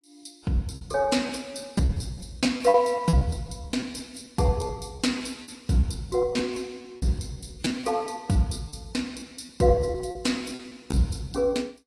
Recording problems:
lossy codec; AAC, log-spectral distance 4 dB
packet loss; 15% of the sound replaced, filled with repeated pitch periods

